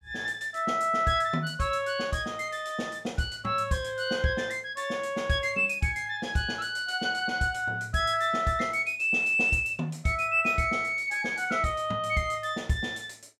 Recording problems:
none

